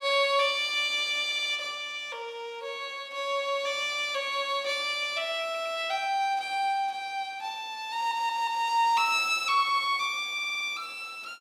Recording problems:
stutter; 4 times, first at 1.5 s

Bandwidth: 15.5 kHz